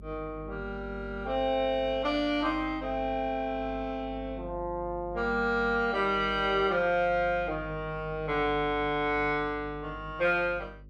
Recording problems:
electrical hum; 50 Hz, harmonics up to 450 Hz, SNR 17 dB

